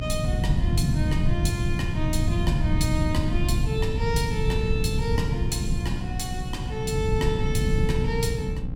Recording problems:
mains hum; 60 Hz, harmonics up to 1.1 kHz, SNR 5 dB
low-frequency rumble; below 150 Hz, SNR -4 dB

